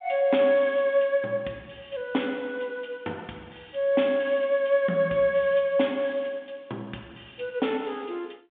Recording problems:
phone line; 150 Hz to 3.6 kHz, G.726

